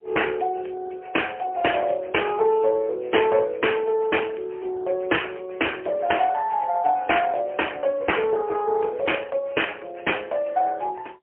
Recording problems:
phone line; 320 Hz to 3.2 kHz, AMR-NB, then MP3

